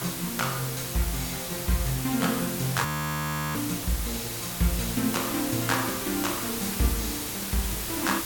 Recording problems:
hiss; slope -1 dB per octave, SNR 2 dB
audio freezing; at 3 s for 0.5 s

